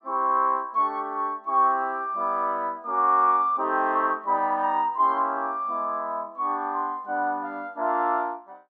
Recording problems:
none

